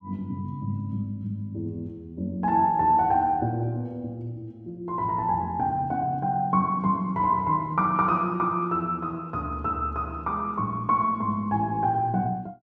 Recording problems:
none

